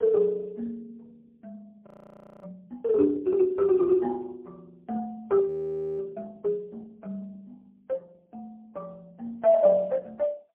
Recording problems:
telephone audio; 240 Hz to 2.6 kHz, AMR-NB, then MP3
frozen audio; at 2 s for 0.5 s and at 5.5 s for 0.5 s

